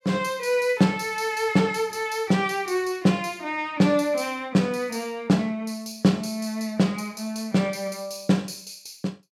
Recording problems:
none

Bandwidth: 16 kHz